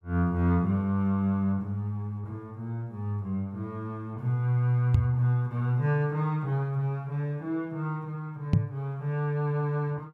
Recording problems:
microphone thump; at 5 s and at 8.5 s; peak +10 dB vs average level

